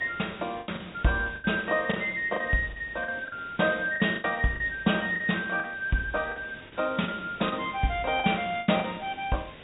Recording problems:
treble missing; nothing above 4 kHz
background hiss; SNR 19 dB
packet loss; 10% of the sound replaced, filled with the last packet

